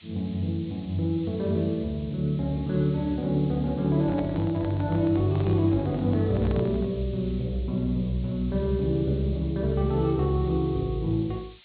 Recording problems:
low-pass filter; nothing above 4.3 kHz
hiss; SNR 26 dB
microphone handling noise; from 4 to 7 s; peak -8 dB vs average level

